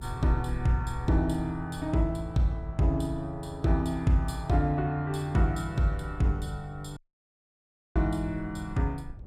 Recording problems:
rumble; below 76 Hz, SNR 16 dB
dropout; at 7 s for 1 s

